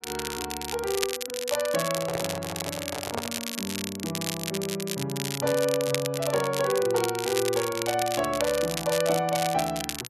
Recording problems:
crackle; vinyl, SNR 5 dB
microphone handling noise; from 2 to 3.5 s; peak +1 dB vs average level

